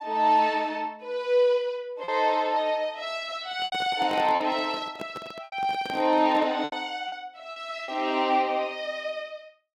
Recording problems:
lost packets; 5% of the sound replaced, filled with repeated pitch periods
microphone handling noise; from 3.5 to 6.5 s; peak -7 dB vs average level

